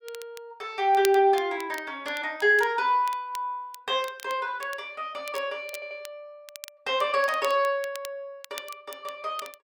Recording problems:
crackle; vinyl, SNR 18 dB
audio stuttering; at 5.5 s

